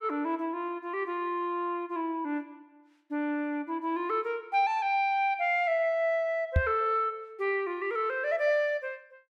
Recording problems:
knock on the microphone; at 6.5 s; peak +7 dB vs average level

